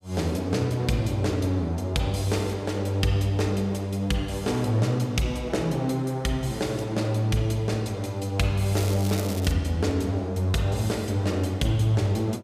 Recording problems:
crackle; at 9 s; loose cable, SNR 13 dB

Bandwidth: 15 kHz